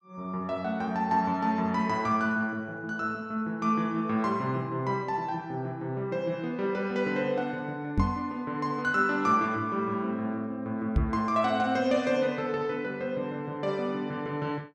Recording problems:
microphone bump; at 8 s and at 11 s; peak +7 dB vs average level

